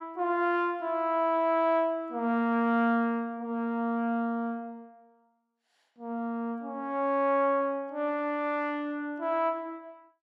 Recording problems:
none

